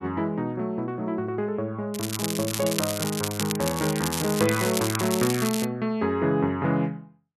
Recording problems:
crackling; from 2 to 5.5 s; loose cable, SNR 4 dB

